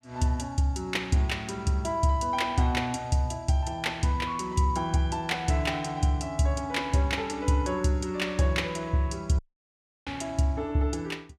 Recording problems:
dropout; at 9.5 s for 0.5 s

